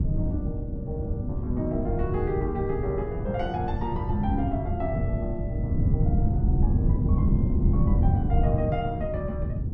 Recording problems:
wind on the microphone; below 150 Hz, SNR -4 dB

